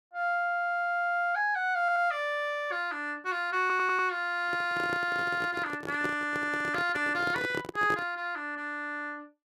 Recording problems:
stutter; at 2 s and at 3.5 s
microphone handling noise; from 4.5 to 8 s; peak -2 dB vs average level

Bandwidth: 14.5 kHz